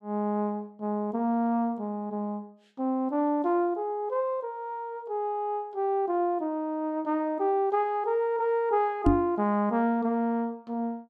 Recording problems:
knock on the microphone; at 9 s; peak +9 dB vs average level

